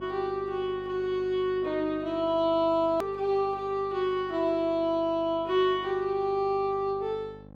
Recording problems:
hum; 50 Hz, harmonics up to 1.4 kHz, SNR 21 dB
edit click; at 3 s

